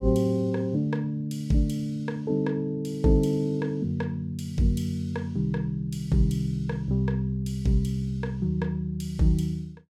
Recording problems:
none

